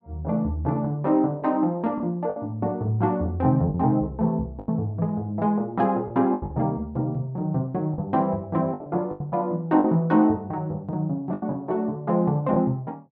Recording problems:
lost packets; 6% of the sound replaced, filled with the last packet

